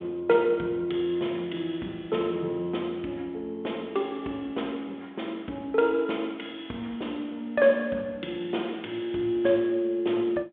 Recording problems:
phone line; 150 Hz to 3.5 kHz, G.726

